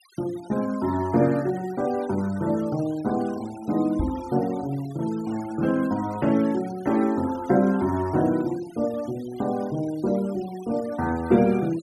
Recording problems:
denoising artefacts; signal-to-artefact ratio 21 dB
microphone thump; at 4 s; peak 0 dB vs average level

